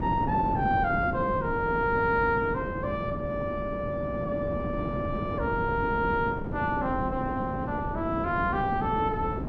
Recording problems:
wind noise; below 360 Hz, SNR 5 dB

